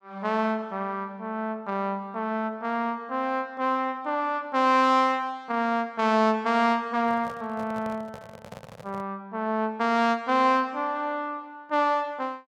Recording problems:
microphone handling noise; from 7 to 9 s; peak -11 dB vs average level

